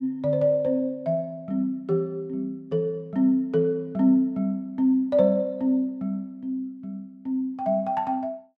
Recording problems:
none

